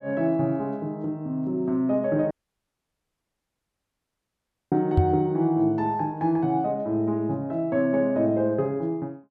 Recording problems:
audio cutting out; at 2.5 s for 2.5 s
microphone bump; at 5 s; peak +7 dB vs average level

